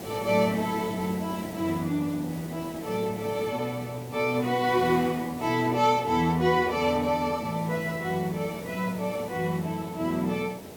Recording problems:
background hiss; SNR 14 dB

